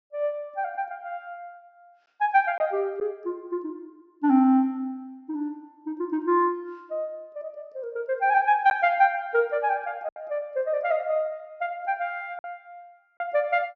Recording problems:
treble missing; nothing above 8 kHz
packet loss; 1.6% of the sound replaced, filled with silence

